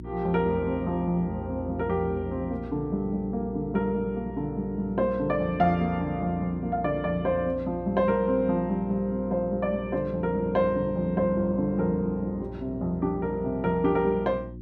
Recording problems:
electrical hum; 60 Hz, harmonics up to 360 Hz, SNR 13 dB

